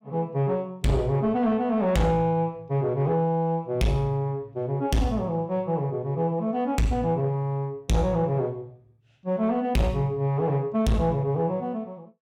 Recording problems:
distorted audio; soft clipping, signal-to-distortion ratio 10 dB

